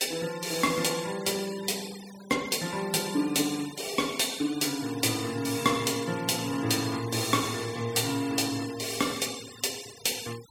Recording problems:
denoising artefacts; signal-to-artefact ratio 15 dB

